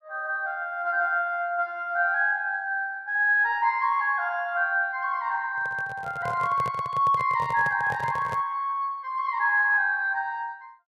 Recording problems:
microphone handling noise; from 5.5 to 8.5 s; peak -7 dB vs average level

